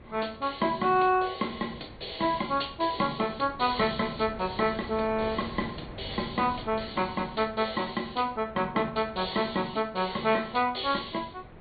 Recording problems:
treble missing; nothing above 4.5 kHz
lossy compression; Vorbis, log-spectral distance 4 dB
wind on the microphone; below 640 Hz, SNR 17 dB

